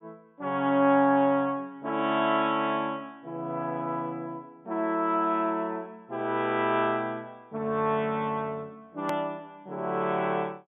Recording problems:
treble cut off; nothing above 3.6 kHz
click at an edit; at 9 s

